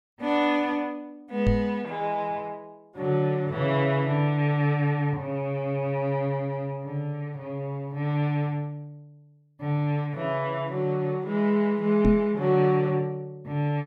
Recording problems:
microphone thump; at 1.5 s and at 12 s; peak +6 dB vs average level

